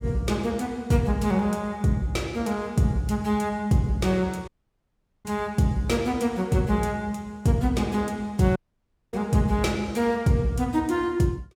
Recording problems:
audio cutting out; at 4.5 s for 1 s and at 8.5 s for 0.5 s

